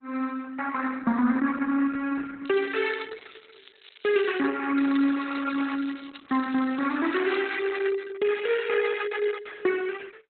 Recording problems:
lossy codec; Opus, log-spectral distance 9 dB, nothing above 3.8 kHz
crackle; from 2.5 to 4.5 s and from 5 to 7.5 s; loose cable, SNR 22 dB

